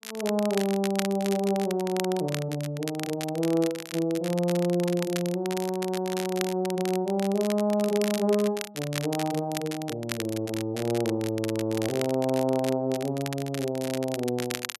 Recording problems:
crackling; vinyl, SNR 10 dB

